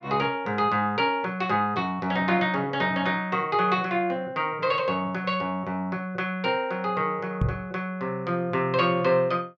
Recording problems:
microphone bump; at 7.5 s; peak +3 dB vs average level

